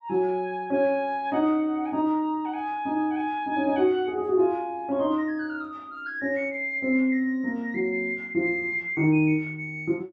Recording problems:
none

